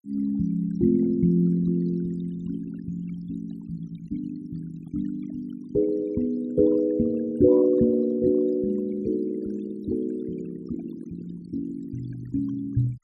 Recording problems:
noise reduction artefacts; signal-to-artefact ratio 18 dB

